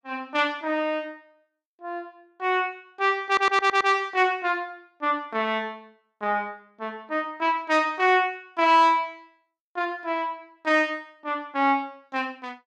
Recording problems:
stutter; at 3.5 s

